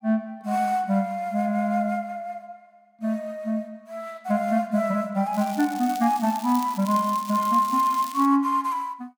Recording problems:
crackling; from 5.5 to 8.5 s; loose cable, SNR 16 dB

